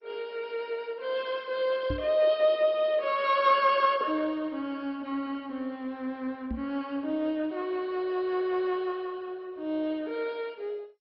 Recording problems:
lossy codec; MP2, log-spectral distance 3 dB, nothing above 4.5 kHz
microphone thump; at 2 s and at 6.5 s; peak -1 dB vs average level

